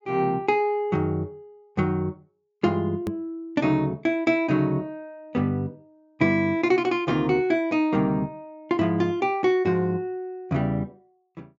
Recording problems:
low-pass filter; nothing above 7.5 kHz
hard cut with a click; at 3 s

